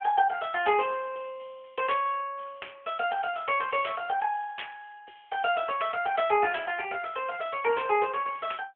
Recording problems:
telephone audio; 370 Hz to 3.4 kHz, AMR-NB

